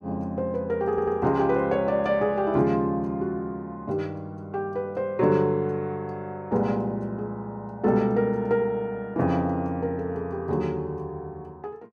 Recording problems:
audio stuttering; at 1 s

